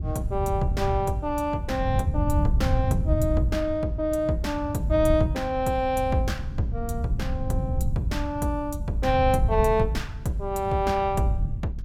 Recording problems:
rumble; below 110 Hz, SNR 3 dB

